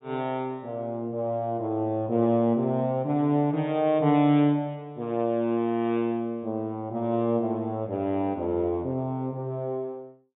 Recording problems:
low-pass filter; nothing above 4 kHz

